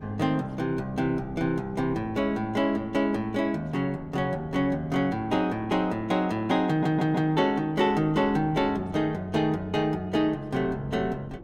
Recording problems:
wind noise; below 350 Hz, SNR 19 dB
stutter; at 6.5 s

